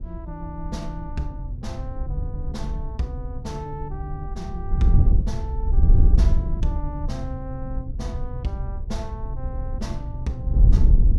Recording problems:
wind on the microphone; below 78 Hz, SNR -8 dB

